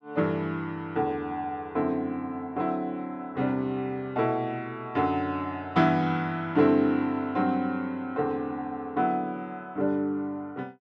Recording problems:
none

